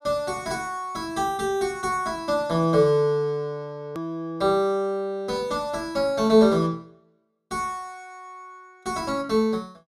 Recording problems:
hard cut with a click; at 4 s

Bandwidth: 14.5 kHz